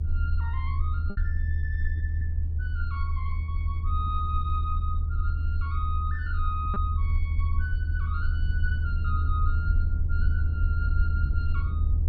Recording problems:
low-frequency rumble; below 80 Hz, SNR -9 dB
packet loss; 1.8% of the sound replaced, filled with repeated pitch periods

